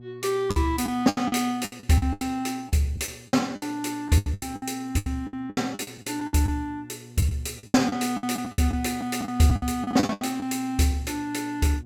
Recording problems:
hum; 60 Hz, harmonics up to 720 Hz, SNR 21 dB
lost packets; 16% of the sound replaced, filled with the last packet

